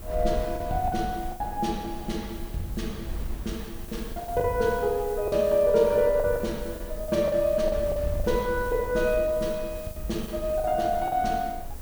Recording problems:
background hiss; SNR 19 dB
wind noise; below 66 Hz, SNR 13 dB
lost packets; 8% of the sound replaced, filled with the last packet

